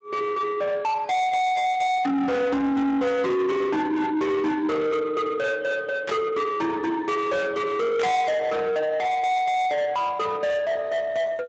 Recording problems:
lossy compression; Speex, log-spectral distance 3 dB, nothing above 7.8 kHz
distorted audio; soft clipping, signal-to-distortion ratio 7 dB
burst of static; at 6 s and at 8 s; peak -4 dB vs average level

